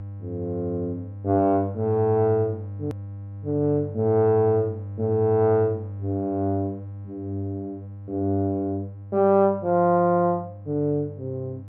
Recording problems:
hum; 50 Hz, harmonics up to 600 Hz, SNR 13 dB
hard cut with a click; at 3 s

